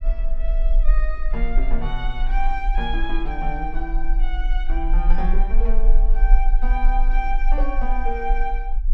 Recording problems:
low-frequency rumble; below 36 Hz, strongest tone 18 Hz, SNR -6 dB

